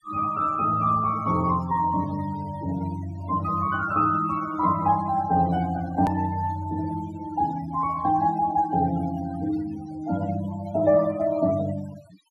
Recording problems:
denoising artefacts; signal-to-artefact ratio 16 dB
click at an edit; at 6 s

